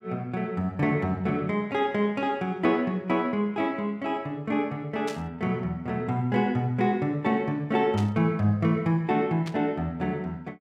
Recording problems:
static burst; at 5 s, at 8 s and at 9.5 s; peak -8 dB vs average level

